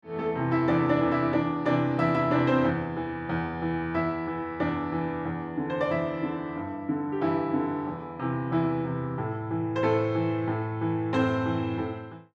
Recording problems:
none

